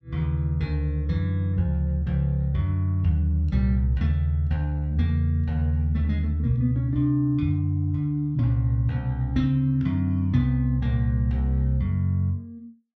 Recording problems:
none

